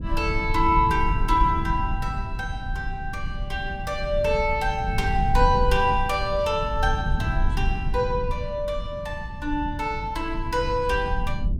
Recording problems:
rumble; below 94 Hz, SNR 4 dB

